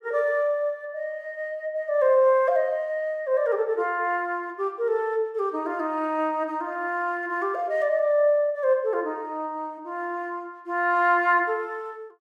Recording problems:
none

